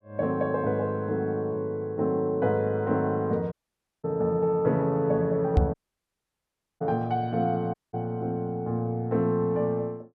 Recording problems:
audio cutting out; at 3.5 s for 0.5 s, at 5.5 s for 1 s and at 7.5 s
microphone thump; at 5.5 s; peak +9 dB vs average level

